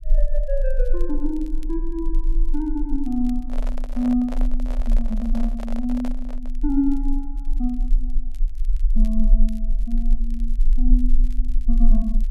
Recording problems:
low-frequency rumble; below 34 Hz, strongest tone 22 Hz, SNR -1 dB
crackling; vinyl, SNR 30 dB
handling noise; from 3.5 to 6.5 s; peak -5 dB vs average level

